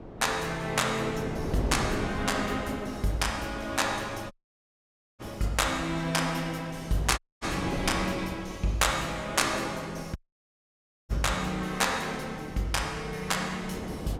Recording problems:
wind on the microphone; below 500 Hz, SNR 10 dB
audio cutting out; at 4.5 s for 1 s, at 7 s and at 10 s for 1 s

